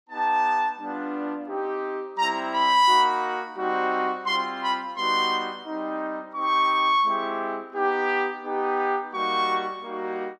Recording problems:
none

